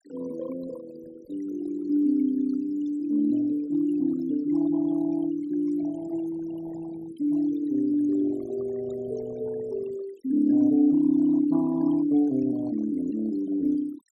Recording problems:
noise reduction artefacts; signal-to-artefact ratio 19 dB

